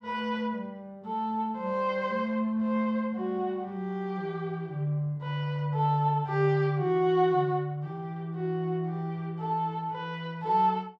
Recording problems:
none

